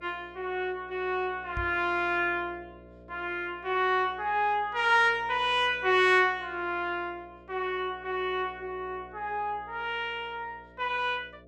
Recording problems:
hum; 60 Hz, harmonics up to 660 Hz, SNR 24 dB
microphone bump; at 1.5 s; peak -5 dB vs average level

